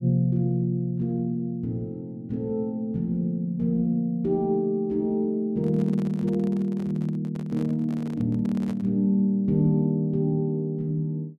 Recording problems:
handling noise; from 5.5 to 9 s; peak -9 dB vs average level

